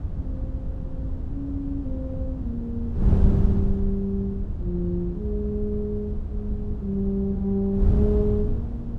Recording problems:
wind noise; below 100 Hz, SNR -1 dB

